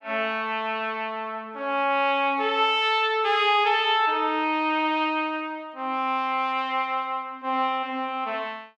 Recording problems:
none

